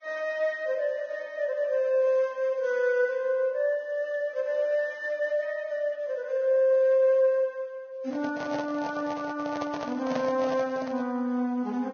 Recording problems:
codec artefacts; Vorbis, log-spectral distance 2 dB
microphone handling noise; from 8 to 11 s; peak -2 dB vs average level

